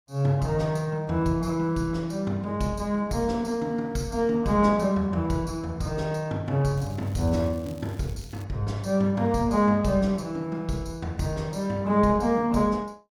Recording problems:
crackle; from 7 to 8.5 s; loose cable, SNR 26 dB

